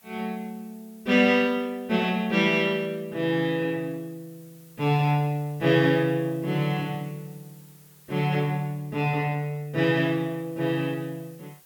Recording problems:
background hiss; slope -1 dB per octave, SNR 28 dB

